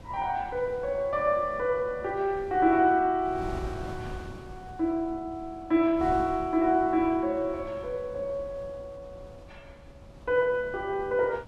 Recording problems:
wind noise; below 310 Hz, SNR 18 dB

